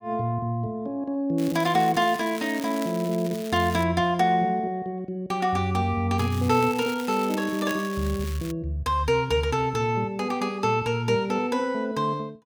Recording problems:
crackle; from 1.5 to 4 s and from 6 to 8.5 s; loose cable, SNR 16 dB

